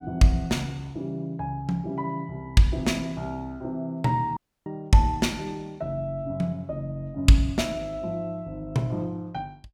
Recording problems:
dropout; at 4.5 s

